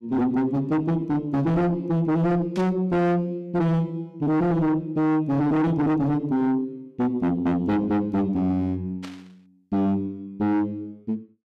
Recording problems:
distortion; soft clipping, signal-to-distortion ratio 6 dB
static burst; at 2.5 s and at 9 s; peak -12 dB vs average level

